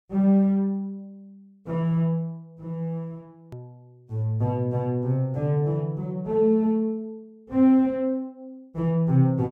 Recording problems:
click at an edit; at 3.5 s

